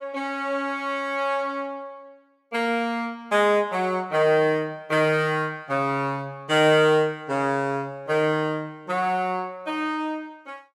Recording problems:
none

